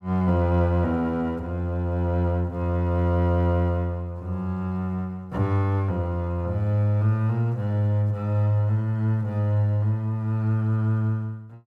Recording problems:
none

